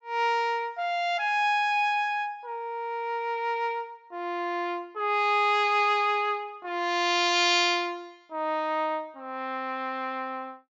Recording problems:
treble missing; nothing above 8 kHz

